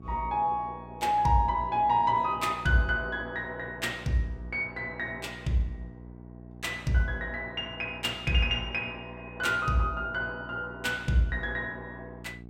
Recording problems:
mains hum; 60 Hz, harmonics up to 780 Hz, SNR 17 dB

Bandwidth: 16.5 kHz